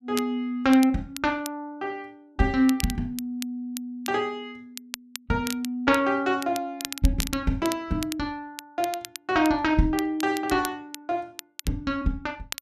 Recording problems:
crackle; vinyl, SNR 12 dB

